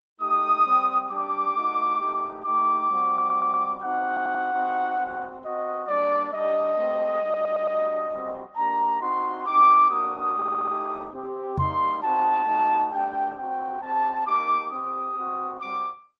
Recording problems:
codec artefacts; Opus, then MP3, log-spectral distance 2 dB, nothing above 7.6 kHz
audio stuttering; 4 times, first at 3 s
microphone bump; at 12 s; peak +2 dB vs average level

